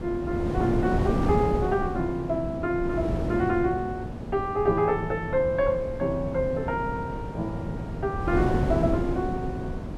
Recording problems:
wind noise; below 340 Hz, SNR 4 dB

